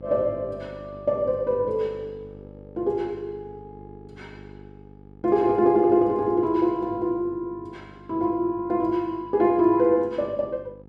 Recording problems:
mains hum; 50 Hz, harmonics up to 900 Hz, SNR 22 dB

